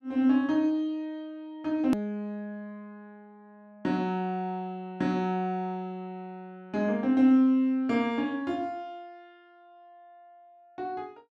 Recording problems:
hard cut with a click; at 2 s

